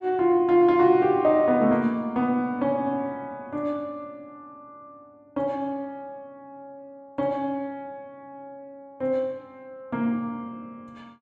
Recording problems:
none

